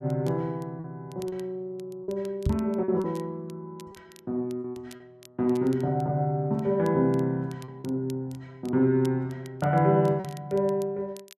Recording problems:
crackling; vinyl, SNR 26 dB
lost packets; 4% of the sound replaced, filled with repeated pitch periods
microphone thump; at 2.5 s; peak +5 dB vs average level

